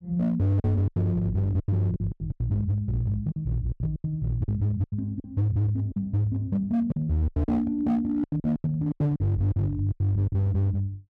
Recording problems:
distorted audio; hard clipping, signal-to-distortion ratio 10 dB
packet loss; 13% of the sound replaced, filled with silence

